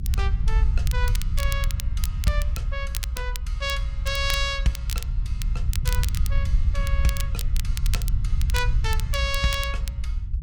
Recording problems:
low-frequency rumble; below 68 Hz, SNR -3 dB
crackle; vinyl, SNR 7 dB

